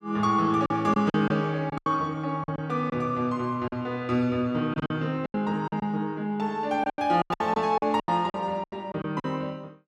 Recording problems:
packet loss; 12% of the sound replaced, filled with silence

